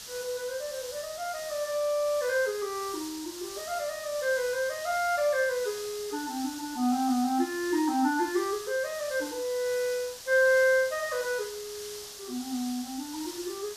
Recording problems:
background hiss; SNR 11 dB

